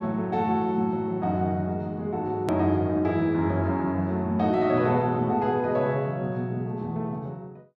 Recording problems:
click at an edit; at 2.5 s

